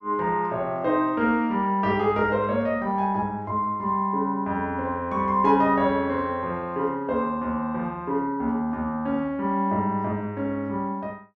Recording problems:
none

